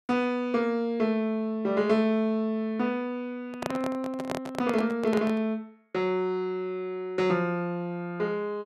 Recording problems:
handling noise; from 3.5 to 5.5 s; peak +1 dB vs average level

